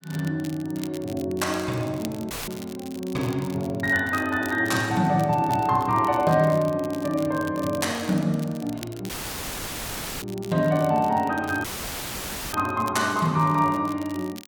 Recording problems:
crackle; vinyl, SNR 20 dB
dropout; at 2.5 s, at 9 s for 1 s and at 12 s for 1 s; filled with static

